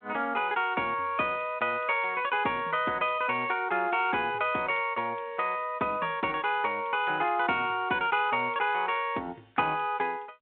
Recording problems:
phone line; 220 Hz to 3.7 kHz, G.726

